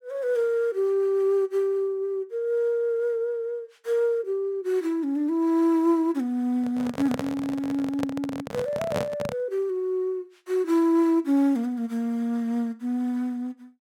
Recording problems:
handling noise; from 6.5 to 9.5 s; peak +1 dB vs average level

